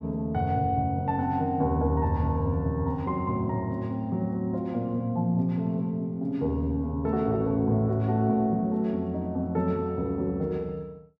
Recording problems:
none

